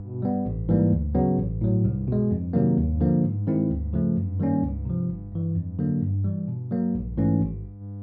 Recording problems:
hum; 50 Hz, harmonics up to 700 Hz, SNR 15 dB

